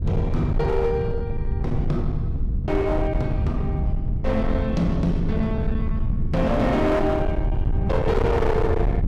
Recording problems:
distorted audio; hard clipping, signal-to-distortion ratio 8 dB
rumble; below 140 Hz, SNR 2 dB

